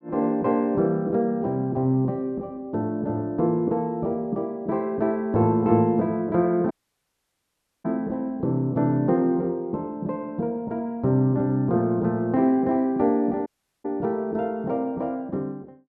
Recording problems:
audio cutting out; at 6.5 s for 1 s and at 13 s

